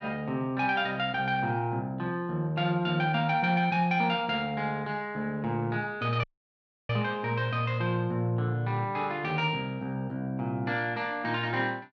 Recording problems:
dropout; at 6 s for 0.5 s

